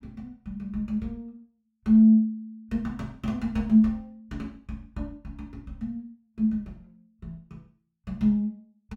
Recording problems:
none

